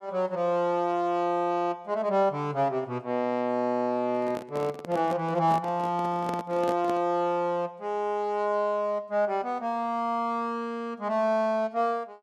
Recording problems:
microphone handling noise; from 4 to 7 s; peak -3 dB vs average level

